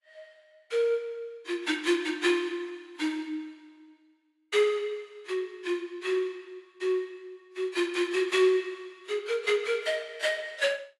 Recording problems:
lossy compression; AAC, log-spectral distance 2 dB, nothing above 11 kHz

